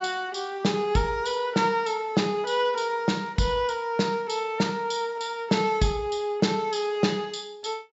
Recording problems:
treble cut off; nothing above 8 kHz

